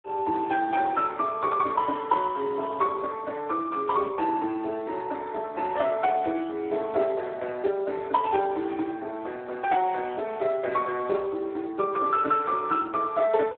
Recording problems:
phone line; 280 Hz to 3 kHz, Speex

